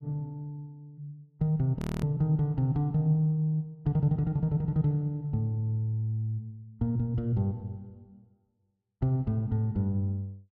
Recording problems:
audio freezing; at 2 s

